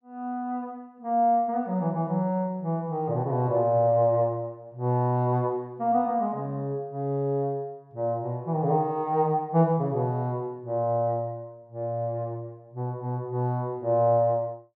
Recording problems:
none

